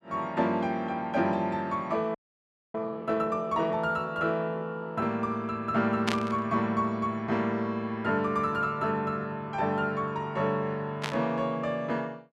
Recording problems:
frozen audio; at 2 s for 0.5 s
burst of static; at 6 s and at 11 s; peak +4 dB vs average level

